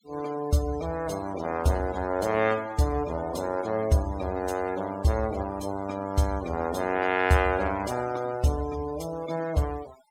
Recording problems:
noise reduction artefacts; signal-to-artefact ratio 17 dB

